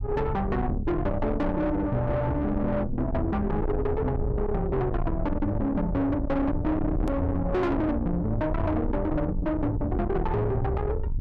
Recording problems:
distortion; soft clipping, signal-to-distortion ratio 6 dB
rumble; below 290 Hz, SNR 4 dB
click at an edit; at 7 s

